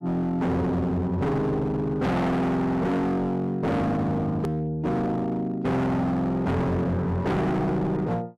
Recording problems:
distorted audio; hard clipping, signal-to-distortion ratio 6 dB
hard cut with a click; at 4.5 s

